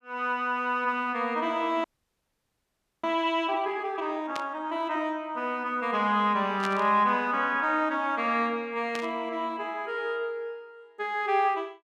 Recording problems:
audio freezing; at 2 s for 1 s
burst of static; at 4.5 s, at 6.5 s and at 9 s; peak -4 dB vs average level

